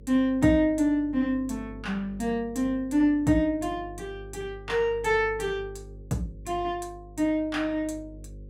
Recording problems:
electrical hum; 50 Hz, harmonics up to 550 Hz, SNR 19 dB

